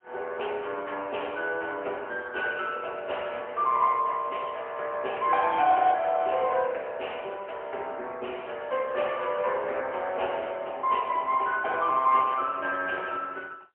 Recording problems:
phone line; 340 Hz to 3.1 kHz, AMR-NB, then MP3

